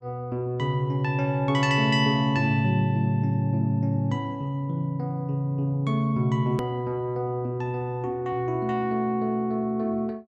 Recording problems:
hard cut with a click; at 6.5 s

